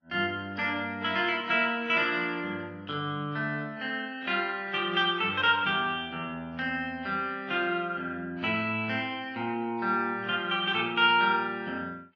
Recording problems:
lossy codec; AAC, log-spectral distance 2 dB

